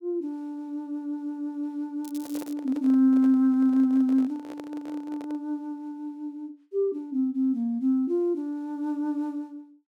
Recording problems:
crackling; at 2 s; loose cable, SNR 20 dB
microphone handling noise; from 2 to 5.5 s; peak -10 dB vs average level

